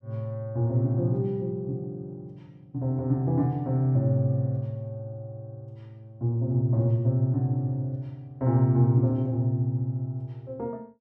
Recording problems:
none

